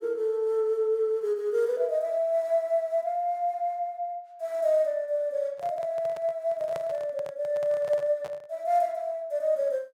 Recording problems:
handling noise; from 5.5 to 8.5 s; peak -6 dB vs average level

